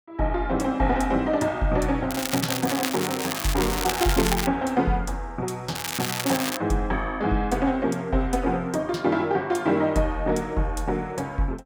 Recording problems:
crackle; from 2 to 4.5 s and at 6 s; loose cable, SNR 4 dB

